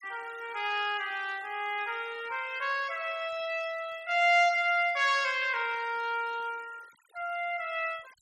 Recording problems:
noise reduction artefacts; signal-to-artefact ratio 24 dB

